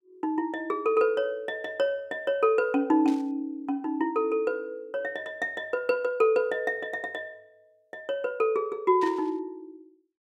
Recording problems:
burst of static; at 3 s and at 9 s; peak -12 dB vs average level

